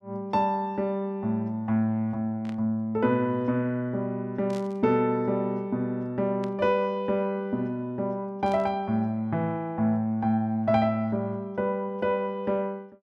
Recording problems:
static burst; 4 times, first at 2.5 s; peak -14 dB vs average level

